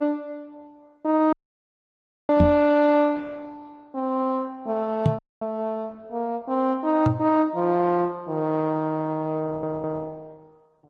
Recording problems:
codec artefacts; Opus, then MP3, log-spectral distance 2 dB, nothing above 7.6 kHz
dropout; at 1.5 s for 1 s and at 5 s
knock on the microphone; at 2.5 s, at 5 s and at 7 s; peak +7 dB vs average level
audio stuttering; at 9.5 s

